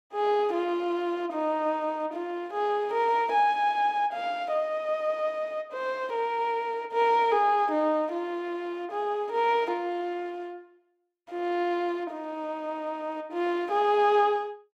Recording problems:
none

